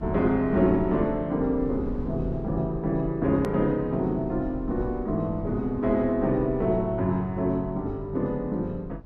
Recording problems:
rumble; below 90 Hz, SNR 14 dB
edit click; at 3.5 s

